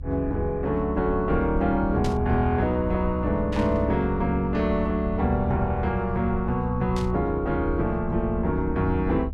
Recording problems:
rumble; below 72 Hz, strongest tone 70 Hz, SNR 8 dB
static burst; at 2 s, at 3.5 s and at 7 s; peak -8 dB vs average level

